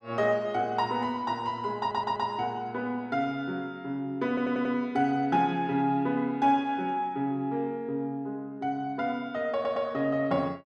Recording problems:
audio stuttering; at 2 s, at 4.5 s and at 9.5 s

